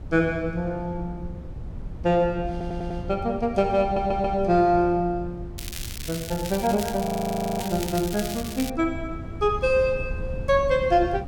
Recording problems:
wind on the microphone; below 130 Hz, SNR 12 dB
stutter; at 2.5 s and at 4 s
crackle; from 5.5 to 8.5 s; loose cable, SNR 11 dB
frozen audio; at 7 s for 0.5 s

